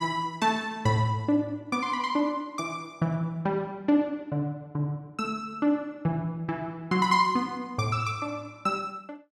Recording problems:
none

